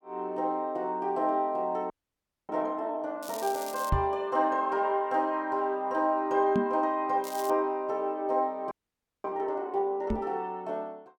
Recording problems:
audio freezing; at 2 s for 0.5 s and at 8.5 s for 0.5 s
crackle; at 3 s and at 7 s; loose cable, SNR 13 dB
microphone bump; at 4 s, at 6.5 s and at 10 s; peak +5 dB vs average level

